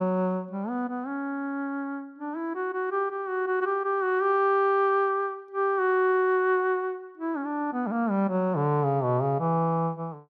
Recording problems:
none

